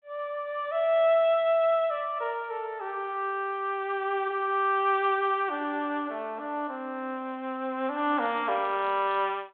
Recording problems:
phone line; 220 Hz to 3.5 kHz, G.726

